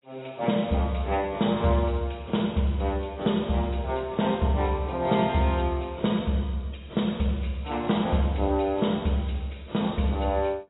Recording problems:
codec artefacts; AAC, log-spectral distance 4 dB, nothing above 3.8 kHz

